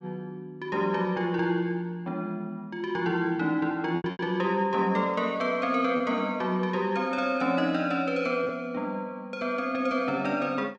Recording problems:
packet loss; 2% of the sound replaced, filled with repeated pitch periods

